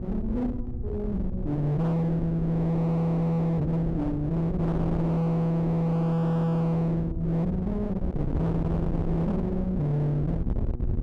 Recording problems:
distortion; hard clipping, signal-to-distortion ratio 6 dB
hum; 60 Hz, harmonics up to 840 Hz, SNR 18 dB
wind noise; below 180 Hz, SNR 6 dB

